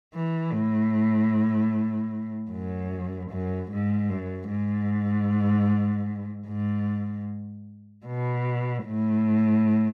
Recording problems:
none

